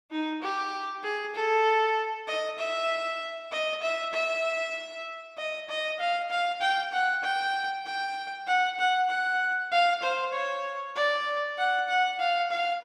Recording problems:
none

